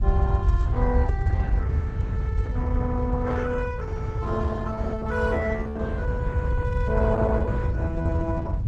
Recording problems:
codec artefacts; Opus, log-spectral distance 2 dB, nothing above 7.3 kHz
rumble; below 90 Hz, SNR -5 dB

